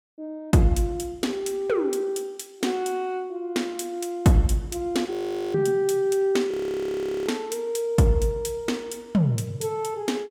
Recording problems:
audio freezing; at 5 s and at 6.5 s for 1 s

